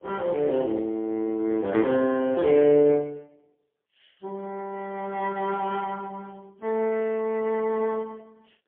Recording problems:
phone line; 240 Hz to 3.1 kHz, AMR-NB, then MP3

